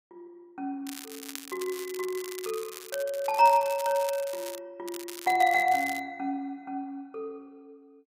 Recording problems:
crackle; from 1 to 4.5 s and from 5 to 6 s; loose cable, SNR 13 dB

